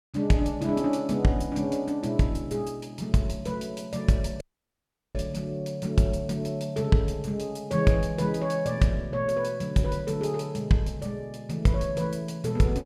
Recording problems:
dropout; at 4.5 s for 0.5 s

